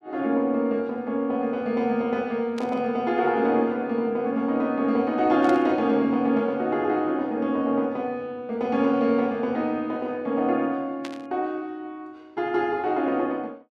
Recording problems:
burst of static; at 2.5 s, at 5.5 s and at 11 s; peak -8 dB vs average level

